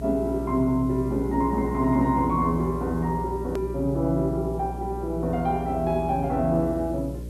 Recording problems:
electrical hum; 60 Hz, harmonics up to 600 Hz, SNR 10 dB
hiss; slope -1 dB per octave, SNR 30 dB
click at an edit; at 3.5 s

